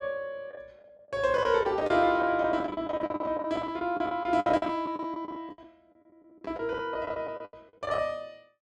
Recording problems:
lost packets; 18% of the sound replaced, filled with the last packet

